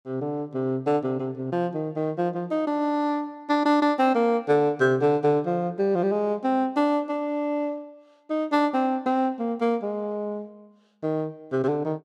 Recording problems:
none

